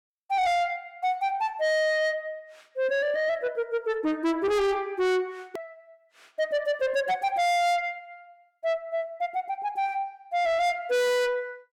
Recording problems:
distorted audio; soft clipping, signal-to-distortion ratio 7 dB
hard cut with a click; at 5.5 s

